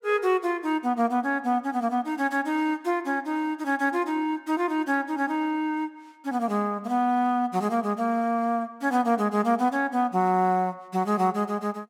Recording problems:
none

